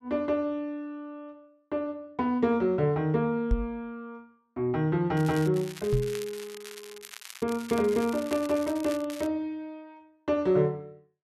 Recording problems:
microphone bump; at 3.5 s and at 6 s; peak +4 dB vs average level
crackle; at 5 s, from 5.5 to 7.5 s and from 7.5 to 9.5 s; loose cable, SNR 15 dB

